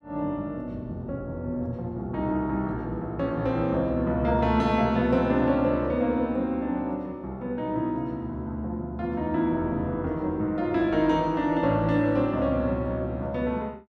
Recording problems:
none

